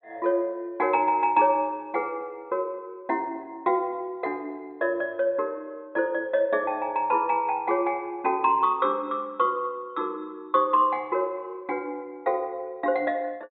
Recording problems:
treble cut off; nothing above 4.2 kHz

